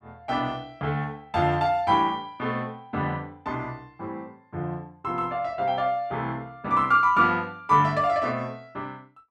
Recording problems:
none

